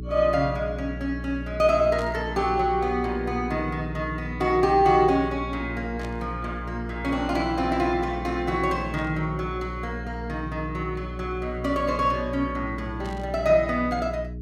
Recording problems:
electrical hum; 60 Hz, harmonics up to 420 Hz, SNR 10 dB
burst of static; 4 times, first at 2 s; peak -14 dB vs average level

